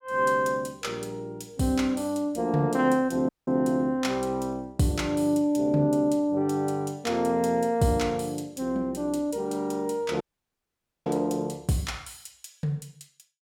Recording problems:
dropout; at 3.5 s and at 10 s for 1 s

